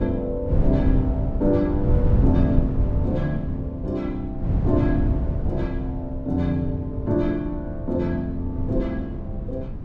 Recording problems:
wind noise; below 140 Hz, SNR 1 dB

